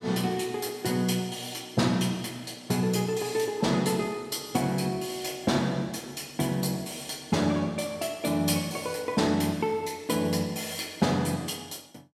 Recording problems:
none

